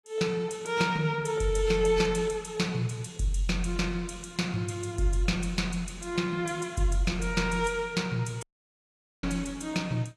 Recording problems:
lossy codec; AAC, log-spectral distance 3 dB, nothing above 11.3 kHz
dropout; at 8.5 s for 1 s

